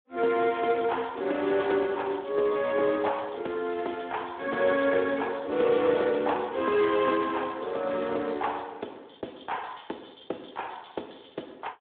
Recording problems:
telephone audio; 260 Hz to 3.5 kHz, Speex

